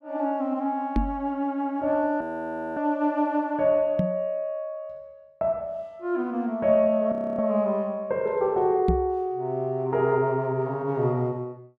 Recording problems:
knock on the microphone; at 1 s, at 4 s and at 9 s; peak +5 dB vs average level
frozen audio; at 2 s for 0.5 s and at 7 s

